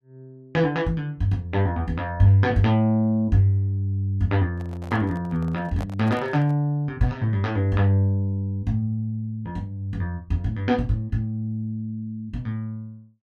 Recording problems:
microphone handling noise; from 4.5 to 6.5 s; peak -9 dB vs average level

